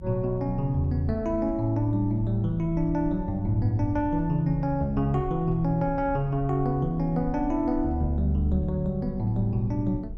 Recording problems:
low-frequency rumble; below 84 Hz, SNR 13 dB

